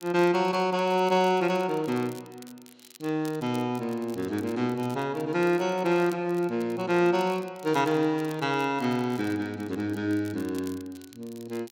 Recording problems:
crackling; vinyl, SNR 24 dB

